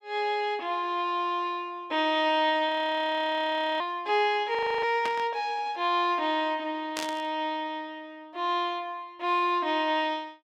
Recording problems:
audio freezing; at 2.5 s for 1 s and at 4.5 s
static burst; at 5 s and at 7 s; peak -1 dB vs average level

